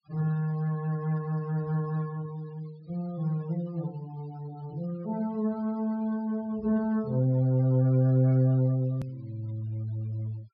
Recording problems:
low-pass filter; nothing above 5.5 kHz
noise reduction artefacts; signal-to-artefact ratio 26 dB
hard cut with a click; at 9 s

